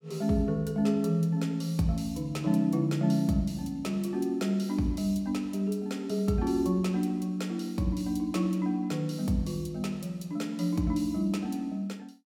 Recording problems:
none

